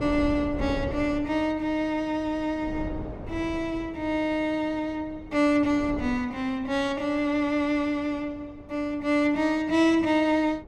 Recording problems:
wind noise; below 380 Hz, SNR 15 dB

